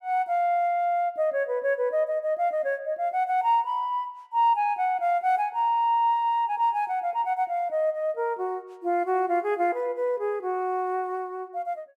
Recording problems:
none

